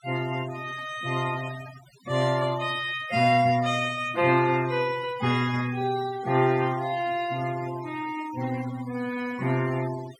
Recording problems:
denoising artefacts; signal-to-artefact ratio 16 dB

